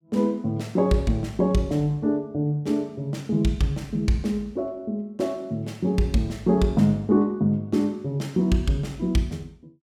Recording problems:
none

